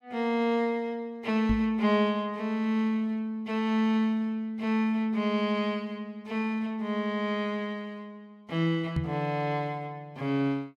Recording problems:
knock on the microphone; at 1.5 s and at 9 s; peak +2 dB vs average level

